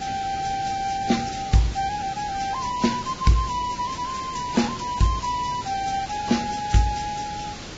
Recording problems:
codec artefacts; AAC, then Vorbis, log-spectral distance 6 dB, nothing above 7.6 kHz
hiss; slope -3 dB per octave, SNR 11 dB

